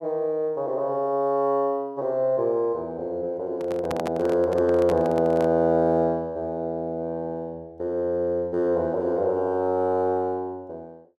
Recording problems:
microphone handling noise; from 3.5 to 5.5 s; peak -3 dB vs average level

